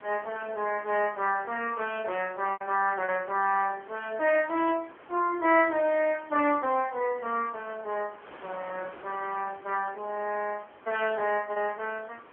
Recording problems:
phone line; 240 Hz to 3.2 kHz, AMR-NB
wind noise; below 1.7 kHz, SNR 22 dB
lost packets; 1.7% of the sound replaced, filled with repeated pitch periods

